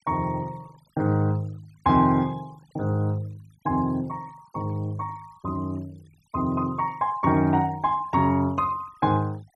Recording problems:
noise reduction artefacts; signal-to-artefact ratio 28 dB

